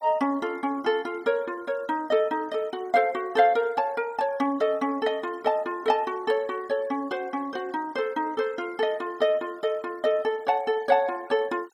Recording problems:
noise reduction artefacts; signal-to-artefact ratio 26 dB

